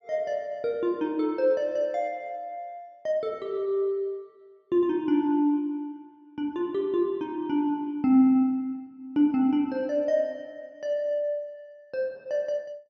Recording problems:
none

